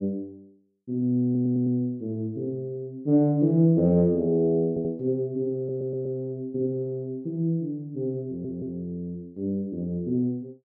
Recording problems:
audio stuttering; 4 times, first at 1.5 s

